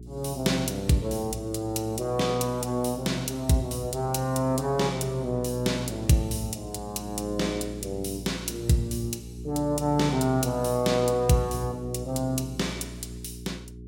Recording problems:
electrical hum; 60 Hz, harmonics up to 420 Hz, SNR 13 dB

